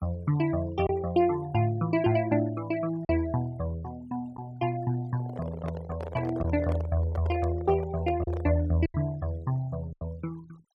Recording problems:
noise reduction artefacts; signal-to-artefact ratio 23 dB
lost packets; 3% of the sound replaced, filled with silence
handling noise; from 5 to 8.5 s; peak -5 dB vs average level

